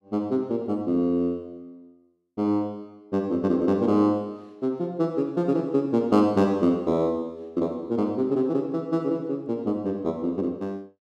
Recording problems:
none

